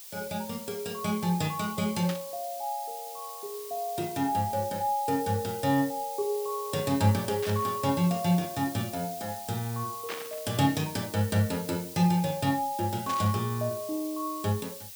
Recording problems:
background hiss; SNR 12 dB
static burst; 4 times, first at 2 s; peak -3 dB vs average level

